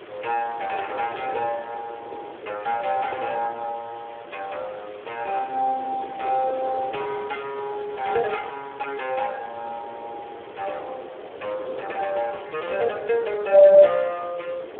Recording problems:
telephone audio; 340 Hz to 3.4 kHz, Speex
hiss; SNR 22 dB
wind noise; below 610 Hz, SNR 16 dB

